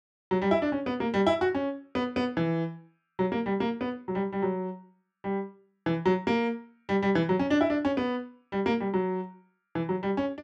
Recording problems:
none

